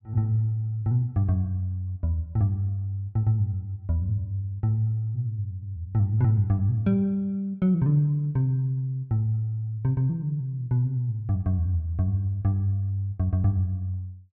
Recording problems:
none

